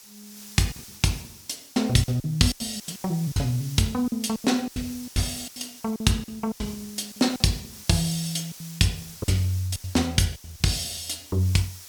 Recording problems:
background hiss; SNR 16 dB
packet loss; 13% of the sound replaced, filled with silence

